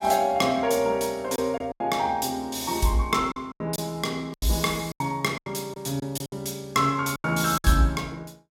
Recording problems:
lost packets; 9% of the sound replaced, filled with silence

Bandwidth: 16 kHz